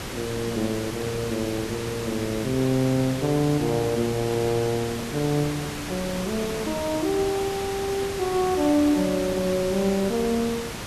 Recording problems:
background hiss; slope -3 dB per octave, SNR 7 dB

